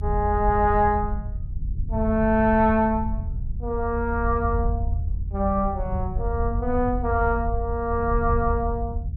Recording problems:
low-frequency rumble; below 82 Hz, SNR 5 dB

